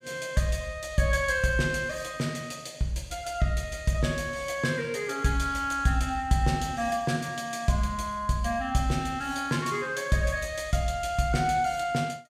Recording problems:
none

